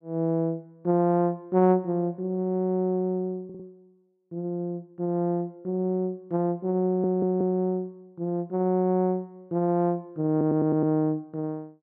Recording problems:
stutter; at 3.5 s, at 7 s and at 10 s

